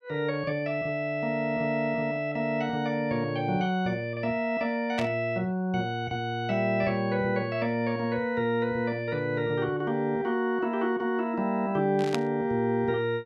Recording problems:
burst of static; at 5 s and at 12 s; peak 0 dB vs average level

